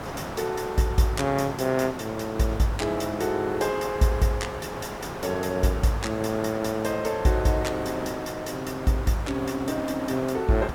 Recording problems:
background hiss; SNR 9 dB

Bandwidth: 17.5 kHz